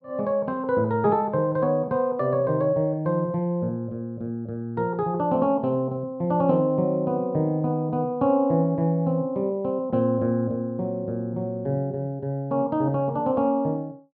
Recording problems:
none

